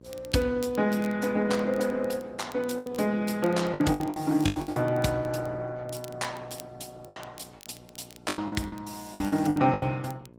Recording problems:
codec artefacts; Opus, log-spectral distance 4 dB, nothing above 18.9 kHz
electrical hum; 60 Hz, harmonics up to 1.1 kHz, SNR 24 dB
crackling; vinyl, SNR 24 dB
lost packets; 10% of the sound replaced, filled with the last packet

